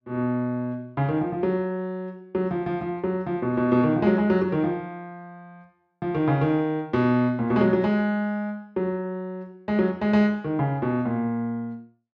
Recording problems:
none

